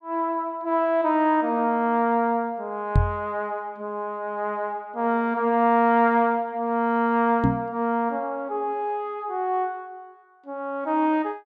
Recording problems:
microphone bump; at 3 s and at 7.5 s; peak +7 dB vs average level

